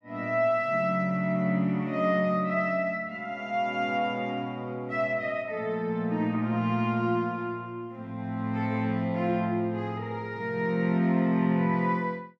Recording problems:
none

